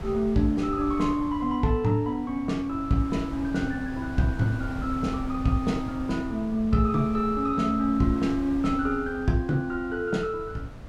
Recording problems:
wind noise; below 210 Hz, SNR 12 dB

